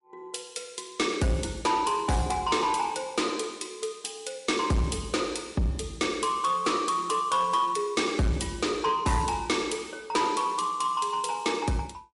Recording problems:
lossy codec; MP3, log-spectral distance 5 dB, nothing above 11 kHz
distortion; soft clipping, signal-to-distortion ratio 10 dB

